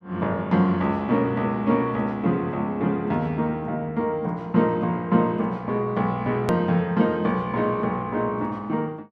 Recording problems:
click at an edit; at 6.5 s

